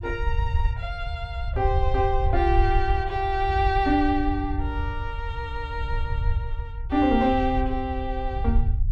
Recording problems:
rumble; below 80 Hz, SNR 3 dB

